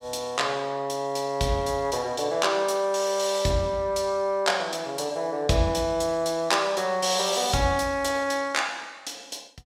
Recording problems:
none

